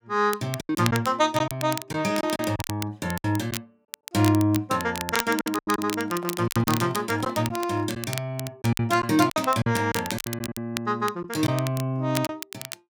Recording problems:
crackle; vinyl, SNR 10 dB
lost packets; 9% of the sound replaced, filled with silence
handling noise; from 6 to 8 s; peak -12 dB vs average level

